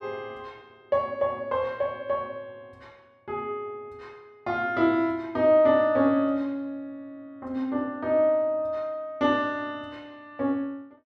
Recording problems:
none

